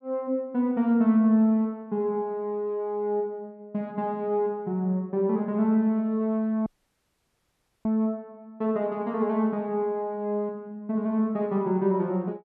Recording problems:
audio cutting out; at 6.5 s for 1 s

